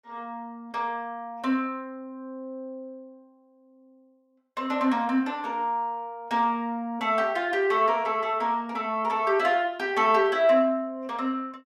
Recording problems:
none

